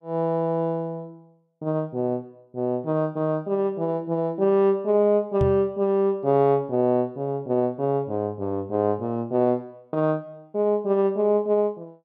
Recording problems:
microphone thump; at 5.5 s; peak +3 dB vs average level

